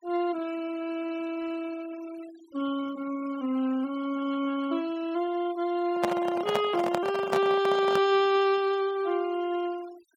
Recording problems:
denoising artefacts; signal-to-artefact ratio 19 dB
handling noise; from 6 to 8 s; peak +3 dB vs average level

